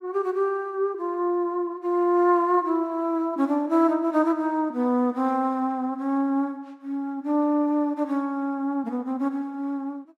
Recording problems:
none

